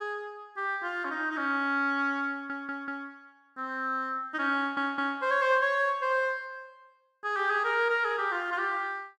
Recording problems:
audio stuttering; at 2.5 s and at 4.5 s

